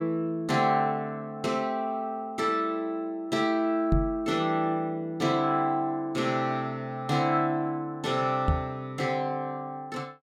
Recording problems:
microphone bump; at 4 s and at 8.5 s; peak +5 dB vs average level

